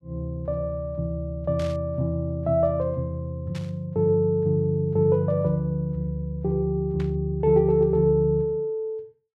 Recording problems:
burst of static; at 1.5 s, at 3.5 s and at 7 s; peak -13 dB vs average level

